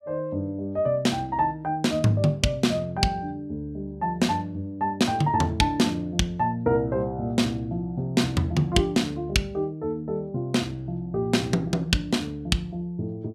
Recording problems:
none

